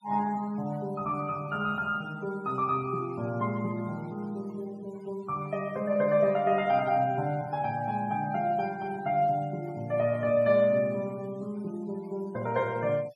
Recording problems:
noise reduction artefacts; signal-to-artefact ratio 26 dB

